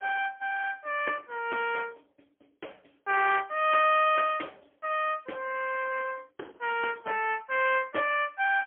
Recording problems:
telephone audio; 320 Hz to 3.3 kHz, AMR-NB, then MP3

